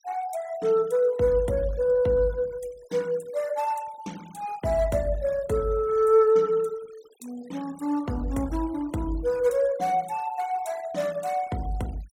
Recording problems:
denoising artefacts; signal-to-artefact ratio 24 dB

